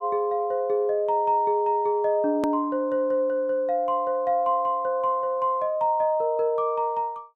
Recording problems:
click at an edit; at 2.5 s

